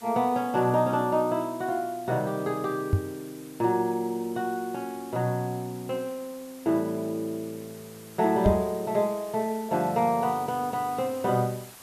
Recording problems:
background hiss; slope -1 dB per octave, SNR 20 dB
microphone thump; at 3 s and at 8.5 s; peak +8 dB vs average level

